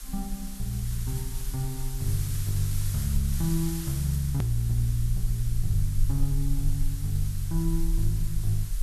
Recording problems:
hiss; slope +1 dB per octave, SNR 11 dB
low-frequency rumble; below 38 Hz, strongest tone 22 Hz, SNR 6 dB
edit click; at 4.5 s

